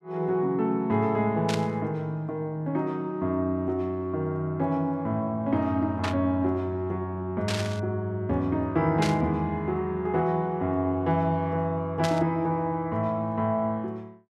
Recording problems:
burst of static; 5 times, first at 1.5 s; peak 0 dB vs average level

